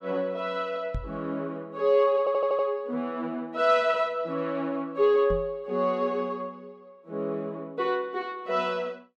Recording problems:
microphone bump; at 1 s and at 5.5 s; peak -2 dB vs average level
stutter; at 2 s

